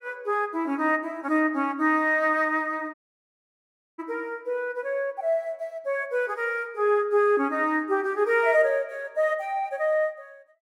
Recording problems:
audio cutting out; at 3 s for 1 s

